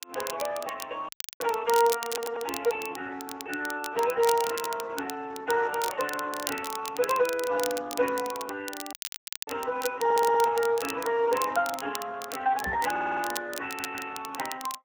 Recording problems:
codec artefacts; MP3, then Speex, log-spectral distance 5 dB
crackle; vinyl, SNR 10 dB
audio cutting out; at 1 s and at 9 s for 0.5 s
audio stuttering; 4 times, first at 2 s
microphone bump; at 13 s; peak -5 dB vs average level

